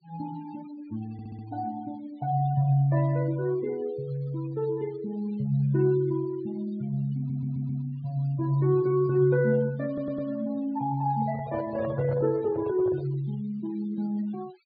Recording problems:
treble missing; nothing above 4.7 kHz
denoising artefacts; signal-to-artefact ratio 21 dB
stutter; at 1 s, at 7 s and at 10 s
microphone handling noise; from 11 to 13 s; peak -3 dB vs average level

